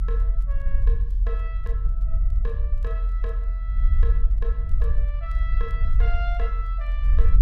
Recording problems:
low-frequency rumble; below 46 Hz, strongest tone 42 Hz, SNR -14 dB
crackling; vinyl, SNR 29 dB

